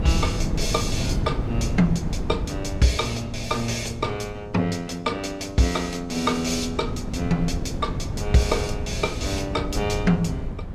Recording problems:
wind noise; below 190 Hz, SNR 5 dB

